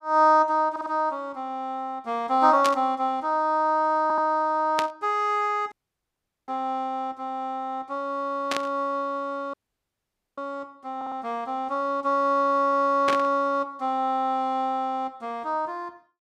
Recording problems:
audio stuttering; at 0.5 s, at 4 s and at 11 s
burst of static; 4 times, first at 2.5 s; peak +1 dB vs average level
audio cutting out; at 5.5 s for 1 s and at 9.5 s for 1 s

